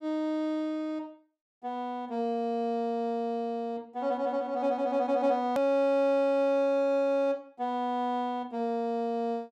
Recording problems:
edit click; at 5.5 s

